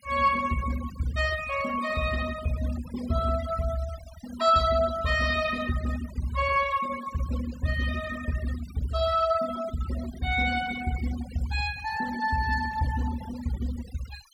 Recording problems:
noise reduction artefacts; signal-to-artefact ratio 15 dB

